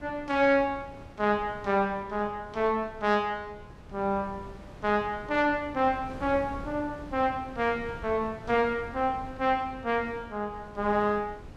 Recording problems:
wind on the microphone; below 380 Hz, SNR 17 dB

